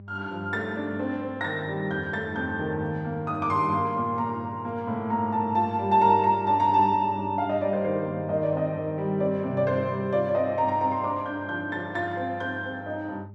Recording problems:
hum; 50 Hz, harmonics up to 600 Hz, SNR 16 dB

